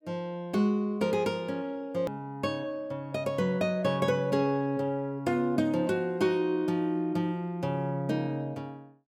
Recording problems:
click at an edit; at 2 s

